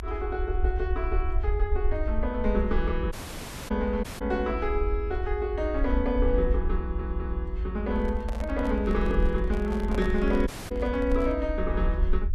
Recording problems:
rumble; below 60 Hz, SNR 2 dB
dropout; at 3 s for 0.5 s, at 4 s and at 10 s
stutter; at 7 s
microphone handling noise; from 8 to 11 s; peak -3 dB vs average level

